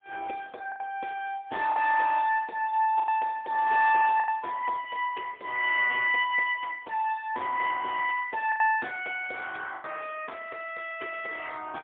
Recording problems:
telephone audio; 320 Hz to 3.5 kHz, AMR-NB, then MP3
packet loss; 4% of the sound replaced, filled with the last packet

